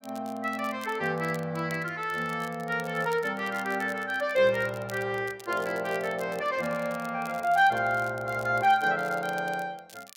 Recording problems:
crackling; vinyl, SNR 22 dB

